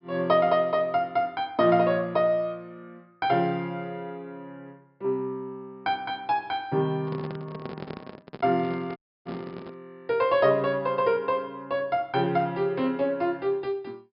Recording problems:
treble missing; nothing above 5.5 kHz
handling noise; from 7 to 10 s; peak -7 dB vs average level
audio cutting out; at 9 s

